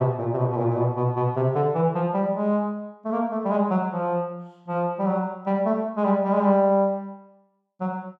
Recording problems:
none

